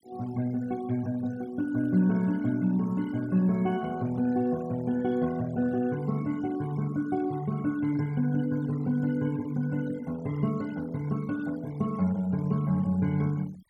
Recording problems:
noise reduction artefacts; signal-to-artefact ratio 21 dB

